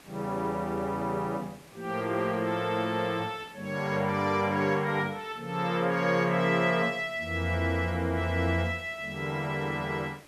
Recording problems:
background hiss; slope -4 dB per octave, SNR 23 dB

